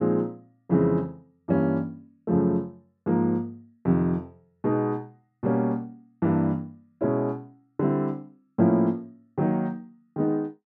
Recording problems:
none

